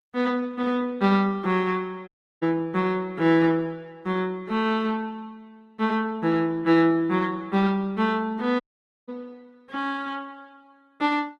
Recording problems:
lossy compression; Opus, log-spectral distance 2 dB
audio cutting out; at 2 s and at 8.5 s

